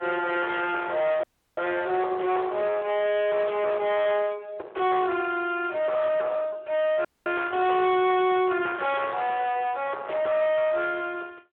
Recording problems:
phone line; 320 Hz to 2.9 kHz, Speex
distorted audio; soft clipping, signal-to-distortion ratio 6 dB
audio cutting out; at 1 s and at 7 s

